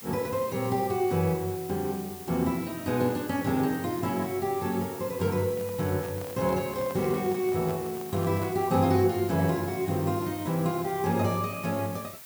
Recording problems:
background hiss; slope 0 dB per octave, SNR 14 dB
microphone handling noise; from 5.5 to 9 s; peak -10 dB vs average level

